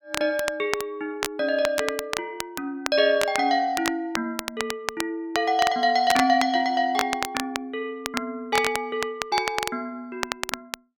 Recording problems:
crackling; vinyl, SNR 7 dB

